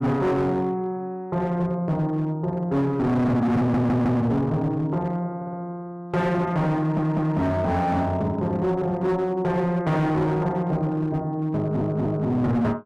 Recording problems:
distorted audio; hard clipping, signal-to-distortion ratio 8 dB
audio stuttering; 4 times, first at 3.5 s

